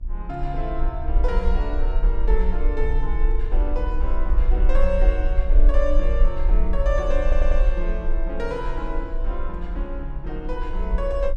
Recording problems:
hum; 60 Hz, harmonics up to 960 Hz, SNR 20 dB
rumble; below 42 Hz, strongest tone 20 Hz, SNR -5 dB
stutter; at 7 s

